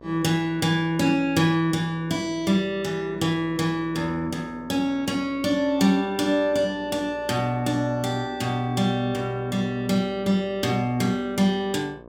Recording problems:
mains hum; 60 Hz, harmonics up to 1.7 kHz, SNR 21 dB

